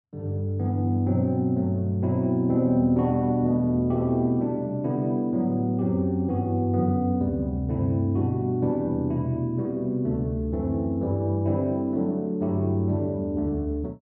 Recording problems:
none

